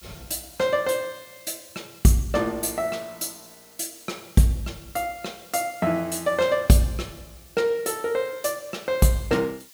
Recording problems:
background hiss; slope +3 dB per octave, SNR 23 dB

